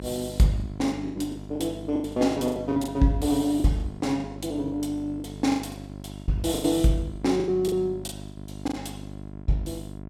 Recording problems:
hum; 50 Hz, harmonics up to 1.1 kHz, SNR 13 dB
lost packets; 17% of the sound replaced, filled with the last packet

